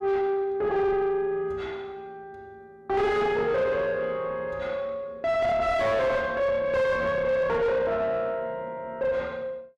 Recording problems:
distortion; soft clipping, signal-to-distortion ratio 6 dB

